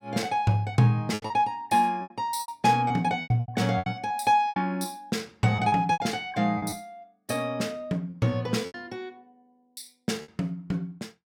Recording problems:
lost packets; 11% of the sound replaced, filled with repeated pitch periods

